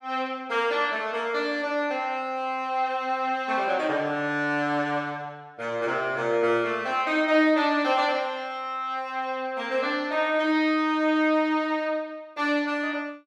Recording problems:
none

